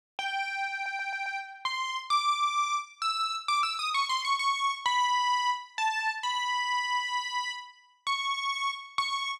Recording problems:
audio stuttering; at 0.5 s

